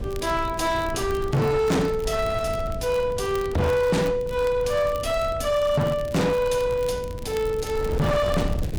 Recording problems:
distorted audio; hard clipping, signal-to-distortion ratio 6 dB
wind on the microphone; below 200 Hz, SNR 10 dB
crackling; vinyl, SNR 22 dB

